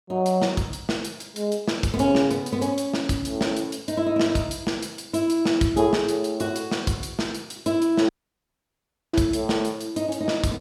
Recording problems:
audio cutting out; at 8 s for 1 s

